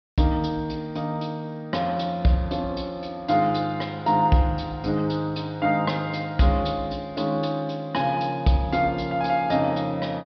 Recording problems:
treble cut off; nothing above 5.5 kHz

